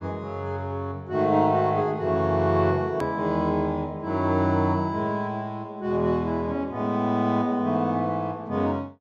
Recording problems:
treble missing; nothing above 8 kHz
hard cut with a click; at 3 s

